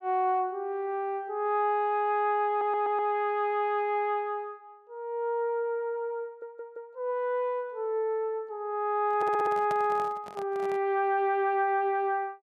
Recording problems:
stutter; at 2.5 s, at 6.5 s and at 9 s
handling noise; from 9 to 11 s; peak -6 dB vs average level

